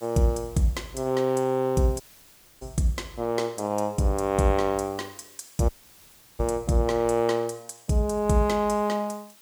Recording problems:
background hiss; slope 0 dB per octave, SNR 26 dB
audio cutting out; at 2 s for 0.5 s and at 5.5 s for 0.5 s

